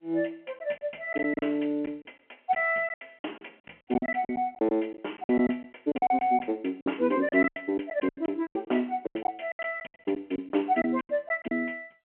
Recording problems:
phone line; 190 Hz to 3.3 kHz, G.711
packet loss; 16% of the sound replaced, filled with silence

